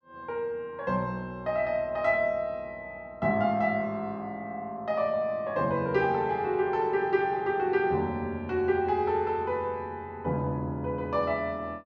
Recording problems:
none

